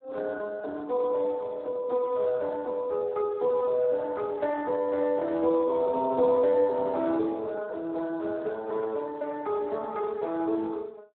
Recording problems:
telephone audio; 300 Hz to 2 kHz, Speex

